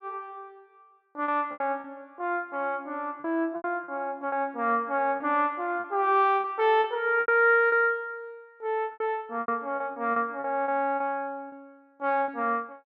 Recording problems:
lost packets; 10% of the sound replaced, filled with repeated pitch periods

